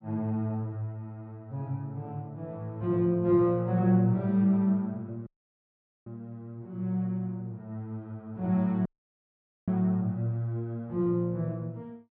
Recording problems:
low-pass filter; nothing above 5.5 kHz
dropout; at 5.5 s for 1 s and at 9 s for 1 s

